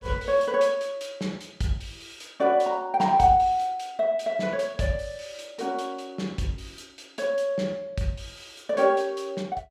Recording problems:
none

